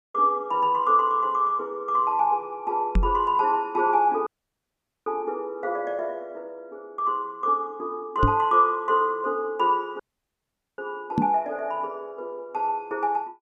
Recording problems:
knock on the microphone; at 3 s, at 8 s and at 11 s; peak +5 dB vs average level
audio cutting out; at 4.5 s for 1 s and at 10 s for 1 s

